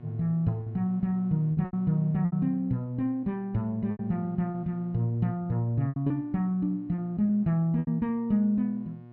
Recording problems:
hum; 60 Hz, harmonics up to 1.1 kHz, SNR 20 dB
lost packets; 7% of the sound replaced, filled with repeated pitch periods

